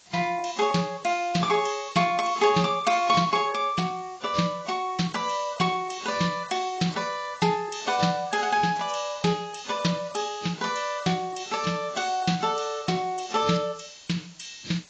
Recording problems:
lossy compression; AAC, log-spectral distance 9 dB, nothing above 7.3 kHz
hiss; slope 0 dB per octave, SNR 25 dB

